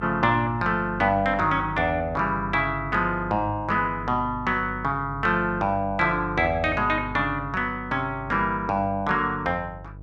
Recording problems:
electrical hum; 50 Hz, harmonics up to 500 Hz, SNR 15 dB

